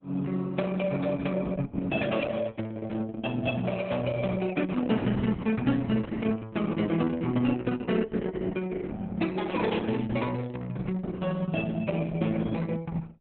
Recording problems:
lossy compression; Opus, log-spectral distance 4 dB, nothing above 3.6 kHz

